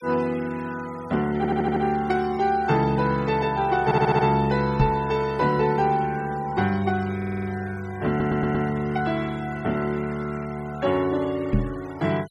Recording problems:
denoising artefacts; signal-to-artefact ratio 21 dB
audio stuttering; 4 times, first at 1.5 s
knock on the microphone; at 5 s and at 12 s; peak +6 dB vs average level

